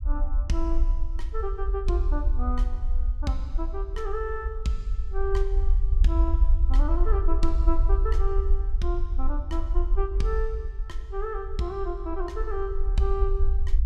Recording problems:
low-frequency rumble; below 50 Hz, SNR -5 dB

